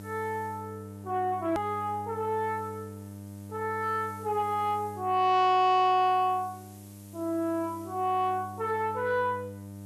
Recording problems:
distorted audio; soft clipping, signal-to-distortion ratio 11 dB
hum; 50 Hz, harmonics up to 900 Hz, SNR 16 dB
hiss; slope +1 dB per octave, SNR 27 dB
click at an edit; at 1.5 s

